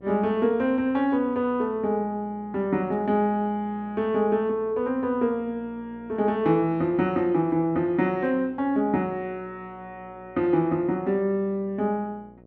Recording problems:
hum; 60 Hz, harmonics up to 780 Hz, SNR 25 dB

